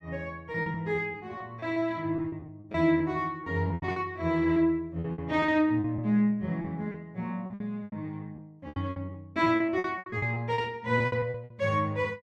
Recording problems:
lost packets; 15% of the sound replaced, filled with repeated pitch periods

